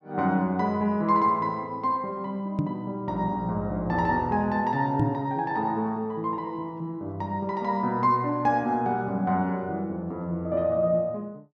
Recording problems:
microphone thump; at 2.5 s and at 5 s; peak +5 dB vs average level

